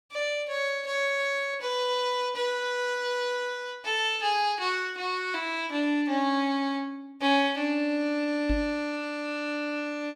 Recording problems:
knock on the microphone; at 8.5 s; peak 0 dB vs average level

